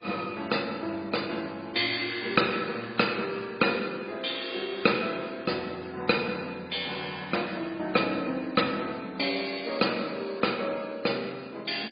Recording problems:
lossy compression; MP3, then MP2, log-spectral distance 7 dB, nothing above 4.9 kHz

